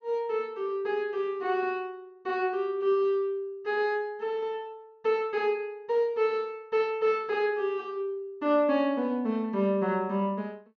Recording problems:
treble cut off; nothing above 6.5 kHz

